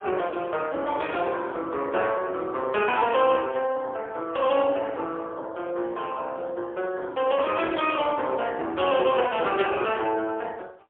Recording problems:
phone line; 260 Hz to 3.4 kHz, AMR-NB, then MP3

